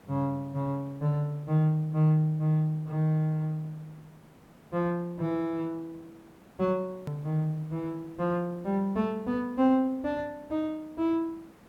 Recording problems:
hiss; slope -7 dB per octave, SNR 25 dB
click at an edit; at 7 s

